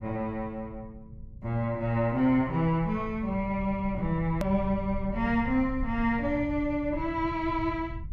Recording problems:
rumble; below 120 Hz, SNR 12 dB
hard cut with a click; at 4.5 s

